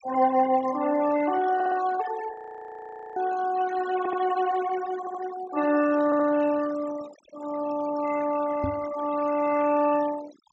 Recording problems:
treble missing; nothing above 8 kHz
denoising artefacts; signal-to-artefact ratio 15 dB
stutter; 4 times, first at 1.5 s
audio freezing; at 2.5 s for 1 s
knock on the microphone; at 8.5 s; peak 0 dB vs average level

